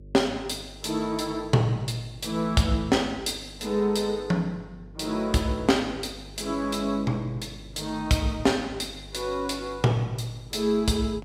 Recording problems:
mains hum; 50 Hz, harmonics up to 550 Hz, SNR 20 dB

